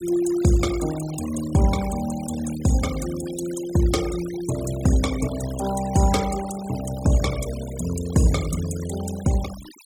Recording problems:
noise reduction artefacts; signal-to-artefact ratio 13 dB

